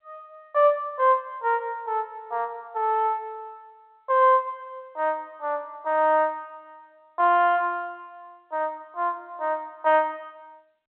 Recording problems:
telephone audio; 320 Hz to 3.4 kHz, G.711

